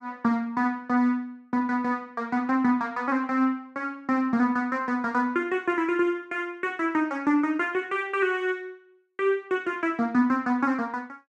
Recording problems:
none

